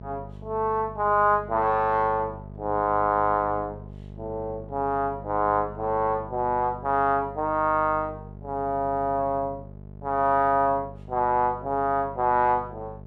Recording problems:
hum; 50 Hz, harmonics up to 850 Hz, SNR 17 dB

